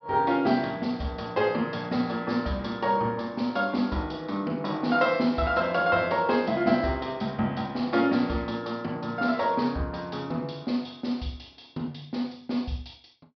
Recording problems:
treble missing; nothing above 5.5 kHz

